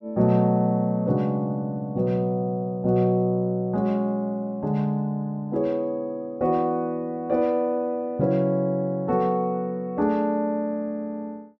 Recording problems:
none

